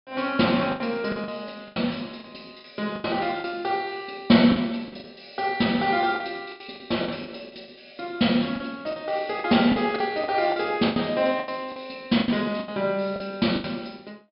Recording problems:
low-pass filter; nothing above 5.5 kHz
lost packets; 12% of the sound replaced, filled with the last packet

